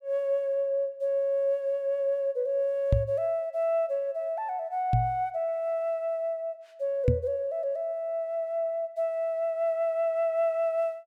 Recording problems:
microphone thump; at 3 s, at 5 s and at 7 s; peak +8 dB vs average level

